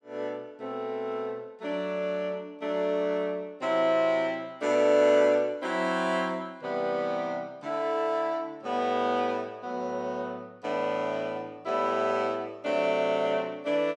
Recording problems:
none

